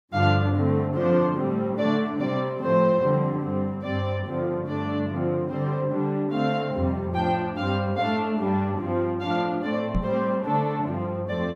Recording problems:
microphone bump; at 10 s; peak +2 dB vs average level

